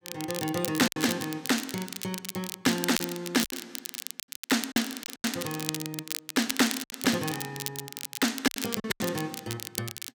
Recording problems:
crackle; vinyl, SNR 6 dB
packet loss; 7% of the sound replaced, filled with silence

